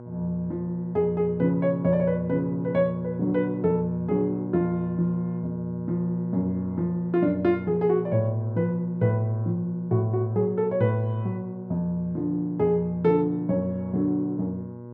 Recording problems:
hum; 60 Hz, harmonics up to 1.1 kHz, SNR 13 dB

